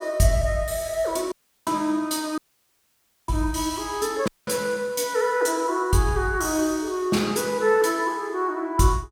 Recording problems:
dropout; at 1.5 s, at 2.5 s for 1 s and at 4.5 s

